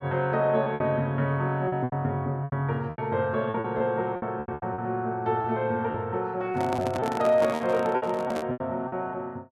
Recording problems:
lost packets; 12% of the sound replaced, filled with repeated pitch periods
microphone handling noise; from 6.5 to 8.5 s; peak -2 dB vs average level

